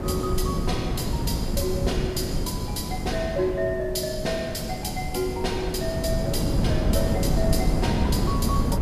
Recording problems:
background hiss; SNR 25 dB
wind on the microphone; below 250 Hz, SNR -1 dB

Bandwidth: 14.5 kHz